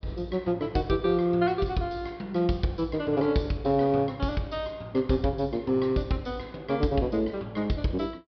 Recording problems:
treble missing; nothing above 5.5 kHz

